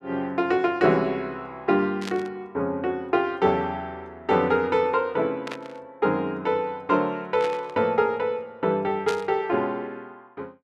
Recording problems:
static burst; 4 times, first at 2 s; peak -4 dB vs average level

